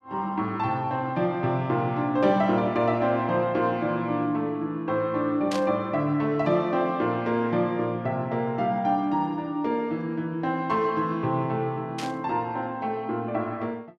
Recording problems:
static burst; at 5.5 s and at 12 s; peak -4 dB vs average level

